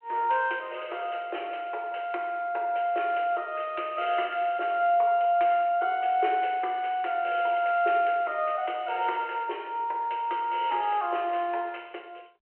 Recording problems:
telephone audio; 300 Hz to 3.2 kHz, G.726

